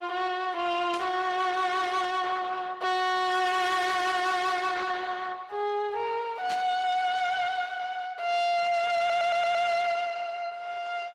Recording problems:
codec artefacts; Opus, log-spectral distance 4 dB
distortion; soft clipping, signal-to-distortion ratio 7 dB
static burst; at 1 s and at 6.5 s; peak -7 dB vs average level
stutter; at 9 s

